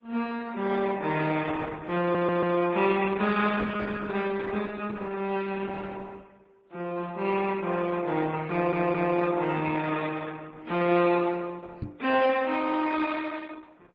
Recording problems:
lossy codec; MP3, then Opus, log-spectral distance 4 dB
audio stuttering; at 2 s and at 8.5 s
knock on the microphone; at 12 s; peak -3 dB vs average level

